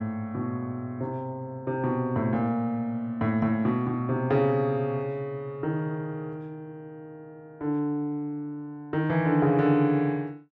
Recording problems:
none

